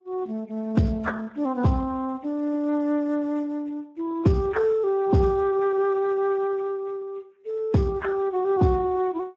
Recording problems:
lossy codec; MP3, then Speex, log-spectral distance 5 dB

